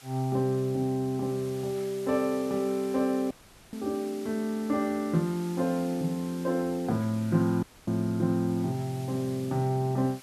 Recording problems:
background hiss; slope 0 dB per octave, SNR 19 dB
dropout; at 3.5 s and at 7.5 s

